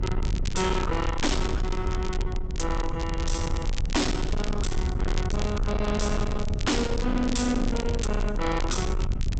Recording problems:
low-pass filter; nothing above 8 kHz
distorted audio; soft clipping, signal-to-distortion ratio 6 dB
low-frequency rumble; below 120 Hz, SNR 2 dB
crackling; vinyl, SNR 13 dB

